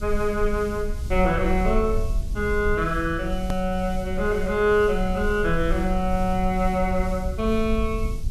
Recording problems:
hiss; SNR 23 dB
rumble; below 60 Hz, SNR 7 dB
click at an edit; at 3.5 s

